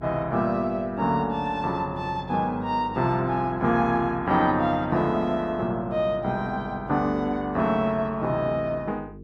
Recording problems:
hum; 50 Hz, harmonics up to 450 Hz, SNR 18 dB

